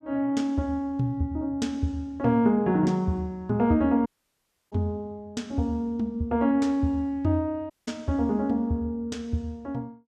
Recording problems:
dropout; at 4 s for 0.5 s and at 7.5 s

